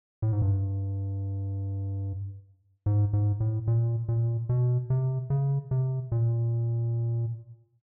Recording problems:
treble cut off; nothing above 5.5 kHz

